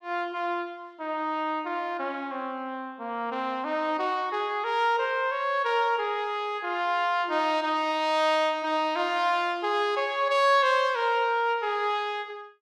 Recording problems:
none

